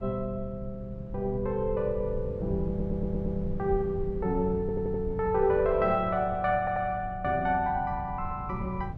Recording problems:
rumble; below 110 Hz, SNR 11 dB
audio stuttering; at 2.5 s, at 4.5 s and at 6.5 s

